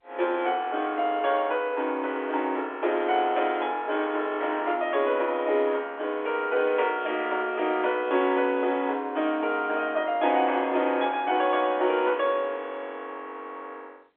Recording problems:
phone line; 260 Hz to 3.5 kHz, G.711

